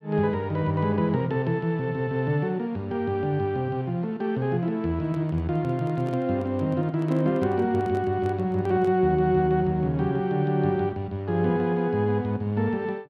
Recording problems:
microphone handling noise; from 5 to 9 s; peak -9 dB vs average level

